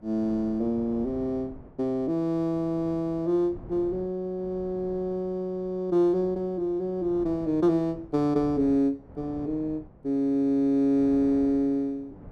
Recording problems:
wind on the microphone; below 370 Hz, SNR 21 dB

